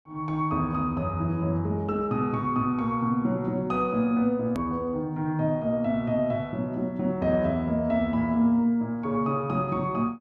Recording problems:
click at an edit; at 4.5 s

